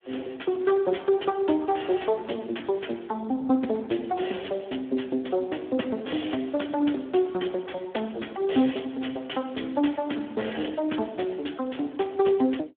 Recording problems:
telephone audio; 220 Hz to 3.4 kHz, Speex

